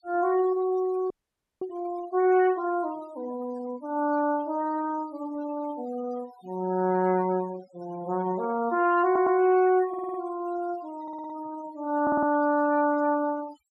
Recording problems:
denoising artefacts; signal-to-artefact ratio 20 dB
audio freezing; at 1 s for 0.5 s
audio stuttering; 4 times, first at 9 s

